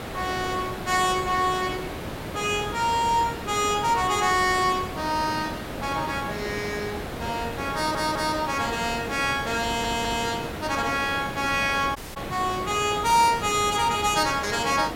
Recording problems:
background hiss; slope -6 dB per octave, SNR 9 dB
stutter; at 7.5 s and at 9.5 s
dropout; at 12 s

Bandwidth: 16 kHz